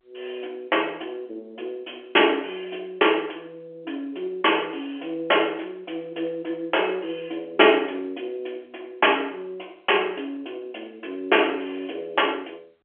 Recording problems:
telephone audio; 300 Hz to 3.3 kHz, G.711

